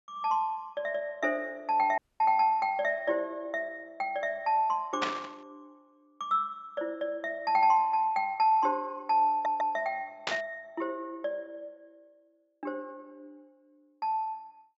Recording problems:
treble missing; nothing above 8 kHz
dropout; at 2 s
burst of static; at 5 s and at 10 s; peak +3 dB vs average level
stutter; at 9.5 s

